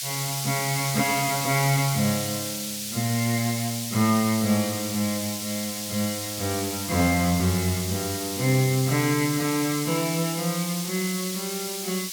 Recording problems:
hiss; SNR 4 dB

